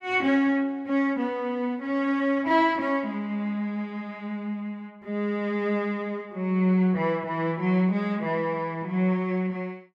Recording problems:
none

